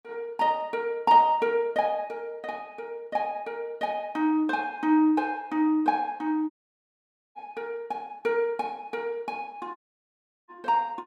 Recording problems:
dropout; at 6.5 s for 1 s and at 10 s for 0.5 s

